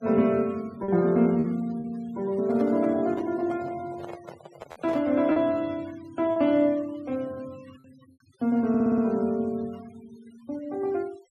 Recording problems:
denoising artefacts; signal-to-artefact ratio 26 dB
packet loss; 2% of the sound replaced, filled with repeated pitch periods
handling noise; from 2.5 to 5 s; peak -9 dB vs average level
audio stuttering; at 8.5 s

